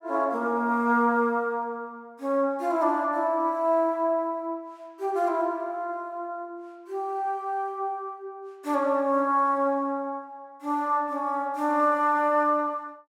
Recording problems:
none

